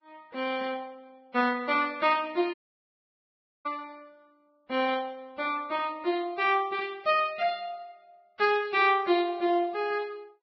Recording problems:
codec artefacts; Vorbis, log-spectral distance 2 dB
dropout; at 2.5 s for 1 s

